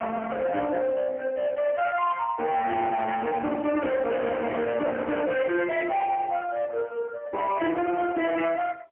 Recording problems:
telephone audio; 260 Hz to 3.2 kHz, AMR-NB, then MP3
distorted audio; hard clipping, signal-to-distortion ratio 8 dB

